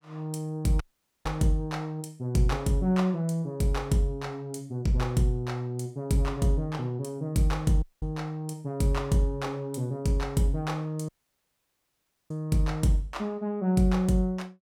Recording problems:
dropout; at 1 s, at 8 s and at 11 s for 1 s

